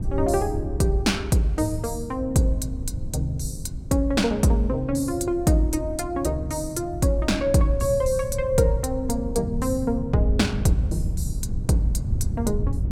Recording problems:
wind noise; below 110 Hz, SNR 8 dB

